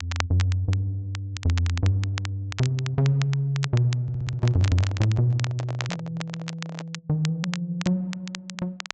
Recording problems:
treble missing; nothing above 8 kHz
crackle; vinyl, SNR 12 dB
microphone handling noise; from 4 to 7 s; peak -7 dB vs average level
audio stuttering; at 4 s

